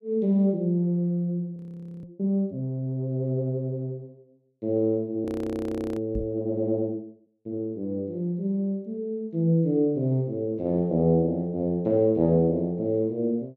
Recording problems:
audio freezing; at 1.5 s and at 5.5 s for 0.5 s
microphone thump; at 6 s; peak -1 dB vs average level

